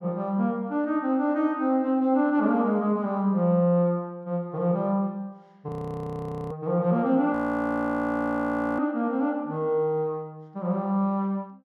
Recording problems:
frozen audio; at 5.5 s for 1 s and at 7.5 s for 1.5 s

